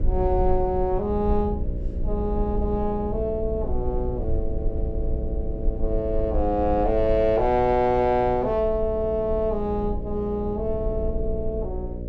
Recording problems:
hum; 60 Hz, harmonics up to 600 Hz, SNR 11 dB
low-frequency rumble; below 62 Hz, SNR 7 dB

